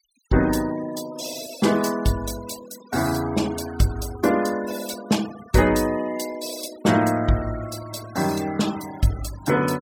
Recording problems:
denoising artefacts; signal-to-artefact ratio 16 dB

